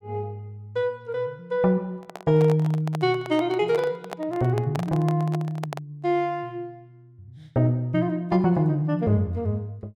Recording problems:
handling noise; from 2 to 6 s; peak -4 dB vs average level

